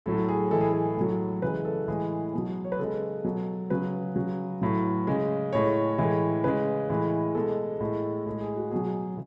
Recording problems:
none

